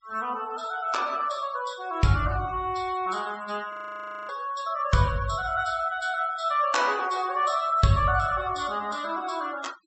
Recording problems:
treble cut off; nothing above 7.9 kHz
noise reduction artefacts; signal-to-artefact ratio 19 dB
audio freezing; at 3.5 s for 0.5 s

